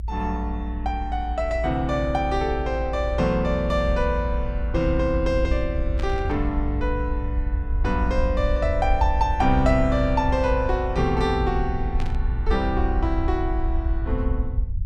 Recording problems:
rumble; below 62 Hz, SNR 3 dB
burst of static; at 6 s and at 12 s; peak -9 dB vs average level

